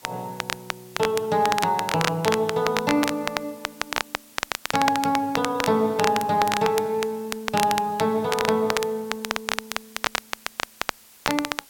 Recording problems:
background hiss; slope 0 dB per octave, SNR 24 dB
crackling; vinyl, SNR 5 dB

